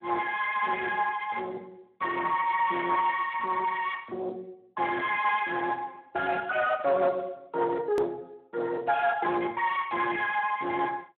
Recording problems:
phone line; 300 Hz to 3.7 kHz, Speex
distorted audio; soft clipping, signal-to-distortion ratio 12 dB
hard cut with a click; at 8 s

